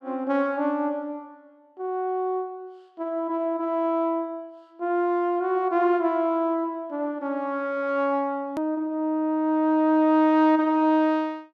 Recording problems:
hard cut with a click; at 8.5 s

